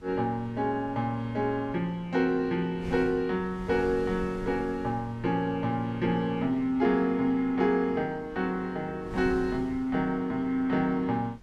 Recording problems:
wind noise; below 180 Hz, SNR 19 dB

